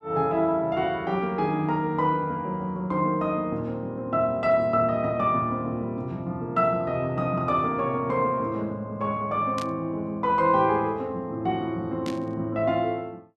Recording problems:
static burst; at 9.5 s and at 12 s; peak -8 dB vs average level

